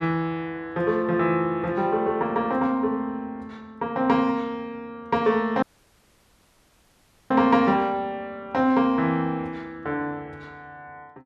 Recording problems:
dropout; at 5.5 s for 1.5 s

